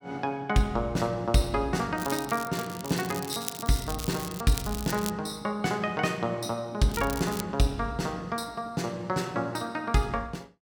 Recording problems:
crackle; from 2 to 5 s and at 7 s; loose cable, SNR 9 dB

